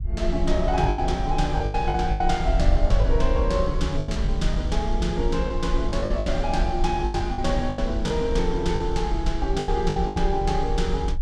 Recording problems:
wind on the microphone; below 56 Hz, SNR 2 dB
packet loss; 10% of the sound replaced, filled with the last packet

